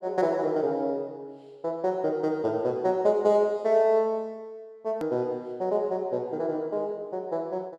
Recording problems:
click at an edit; at 5 s

